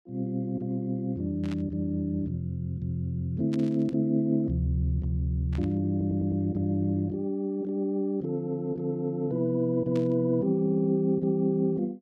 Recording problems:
burst of static; 4 times, first at 1.5 s; peak -12 dB vs average level
stutter; at 6 s and at 11 s

